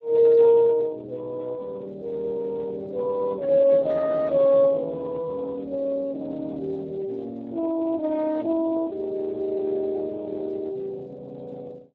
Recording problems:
lossy codec; Speex, log-spectral distance 2 dB

